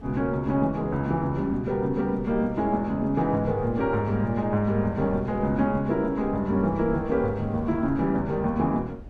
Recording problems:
wind on the microphone; below 130 Hz, SNR 17 dB

